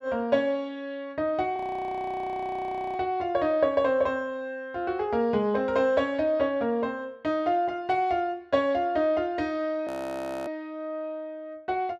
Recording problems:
frozen audio; at 1.5 s for 1.5 s and at 10 s for 0.5 s

